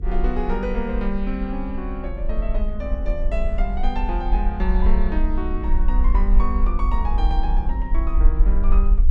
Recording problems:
electrical hum; 50 Hz, harmonics up to 450 Hz, SNR 8 dB
rumble; below 46 Hz, SNR -5 dB

